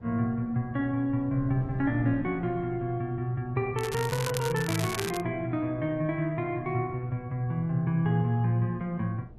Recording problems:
wind noise; below 230 Hz, SNR 20 dB
crackle; from 4 to 5 s; loose cable, SNR 8 dB

